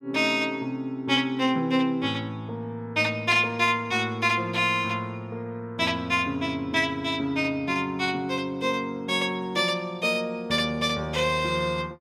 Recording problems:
none

